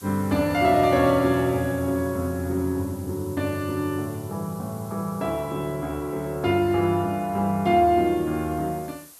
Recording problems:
hiss; slope 0 dB per octave, SNR 22 dB

